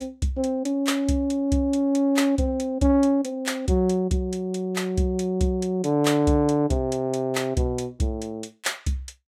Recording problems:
none

